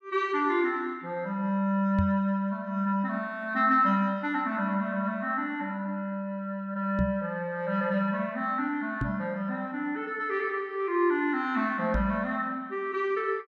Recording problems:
microphone bump; 4 times, first at 2 s; peak +3 dB vs average level

